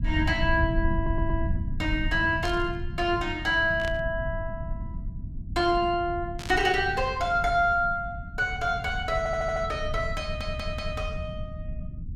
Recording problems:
low-frequency rumble; below 110 Hz, SNR 7 dB
audio stuttering; at 1 s, at 9 s and at 10 s
static burst; at 2.5 s, at 4 s and at 6.5 s; peak -7 dB vs average level

